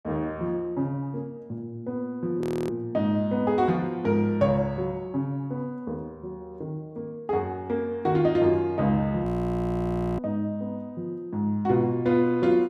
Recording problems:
frozen audio; at 2.5 s and at 9.5 s for 1 s

